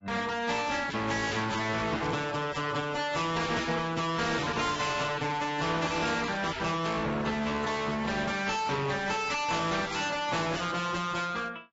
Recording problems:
codec artefacts; AAC, then AAC, log-spectral distance 5 dB, nothing above 7.6 kHz
distortion; hard clipping, signal-to-distortion ratio 6 dB
static burst; 4 times, first at 2 s; peak -15 dB vs average level

